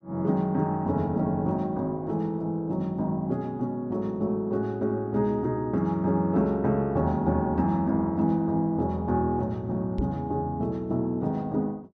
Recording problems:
knock on the microphone; at 10 s; peak +3 dB vs average level

